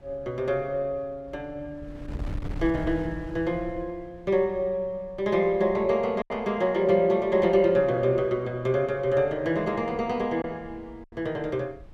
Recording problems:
wind on the microphone; below 150 Hz, SNR 17 dB
lost packets; 1.5% of the sound replaced, filled with silence

